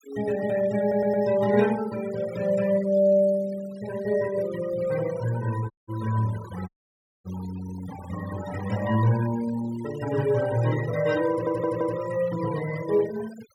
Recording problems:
noise reduction artefacts; signal-to-artefact ratio 16 dB
stutter; at 1 s and at 11 s
audio cutting out; at 5.5 s and at 6.5 s for 0.5 s

